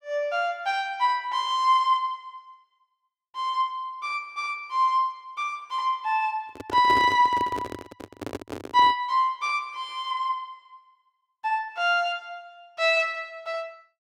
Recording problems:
handling noise; from 6.5 to 9 s; peak -2 dB vs average level

